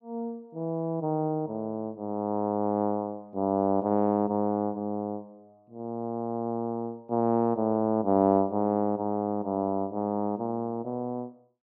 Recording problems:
none

